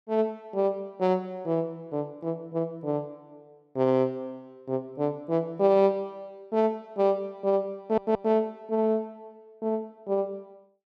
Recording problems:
audio stuttering; at 8 s

